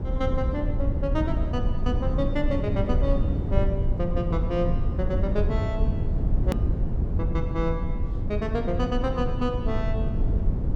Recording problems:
hum; 60 Hz, harmonics up to 1.1 kHz, SNR 17 dB
low-frequency rumble; below 110 Hz, SNR -3 dB
click at an edit; at 6.5 s

